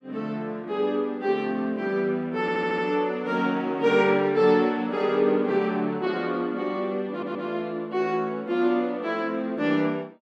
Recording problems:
stutter; at 2.5 s and at 7 s

